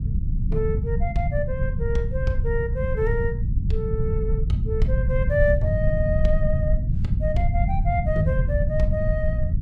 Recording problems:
low-frequency rumble; below 110 Hz, SNR -3 dB

